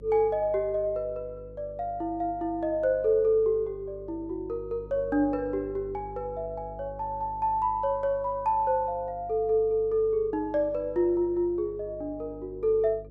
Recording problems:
electrical hum; 50 Hz, harmonics up to 550 Hz, SNR 19 dB

